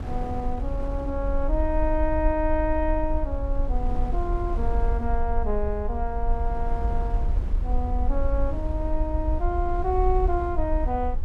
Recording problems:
rumble; below 54 Hz, SNR 0 dB
wind on the microphone; below 390 Hz, SNR 11 dB

